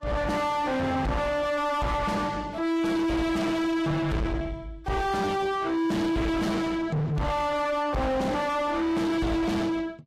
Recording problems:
lossy compression; Vorbis, log-spectral distance 2 dB, nothing above 15.1 kHz
distorted audio; soft clipping, signal-to-distortion ratio 4 dB

